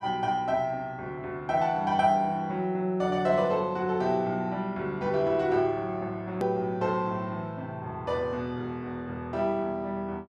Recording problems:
hard cut with a click; at 6.5 s

